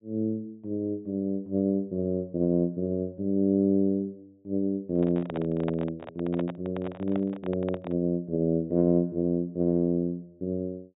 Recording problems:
treble missing; nothing above 4 kHz
handling noise; from 5 to 8 s; peak -3 dB vs average level

